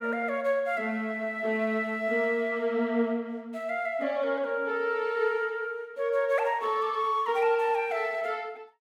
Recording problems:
none

